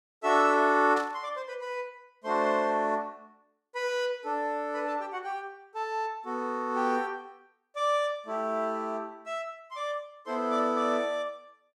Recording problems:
burst of static; at 1 s; peak -9 dB vs average level

